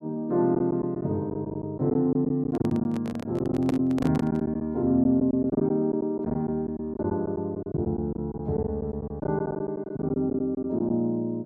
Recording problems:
packet loss; 11% of the sound replaced, filled with silence
microphone handling noise; from 2.5 to 4.5 s; peak -2 dB vs average level

